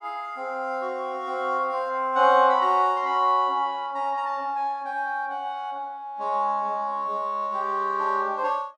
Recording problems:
none

